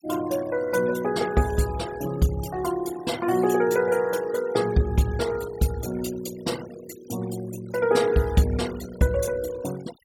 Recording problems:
noise reduction artefacts; signal-to-artefact ratio 17 dB

